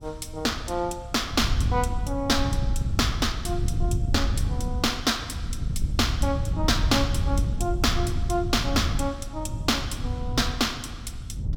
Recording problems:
wind on the microphone; below 110 Hz, SNR 2 dB

